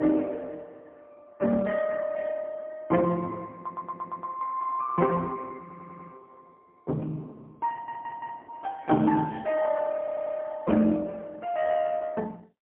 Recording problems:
telephone audio; 150 Hz to 3.1 kHz, AMR-NB, then MP3
stutter; 4 times, first at 3.5 s

